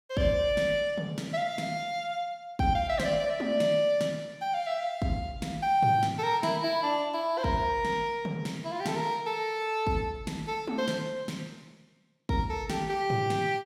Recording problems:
none

